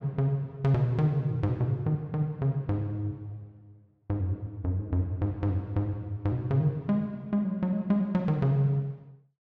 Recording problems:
none

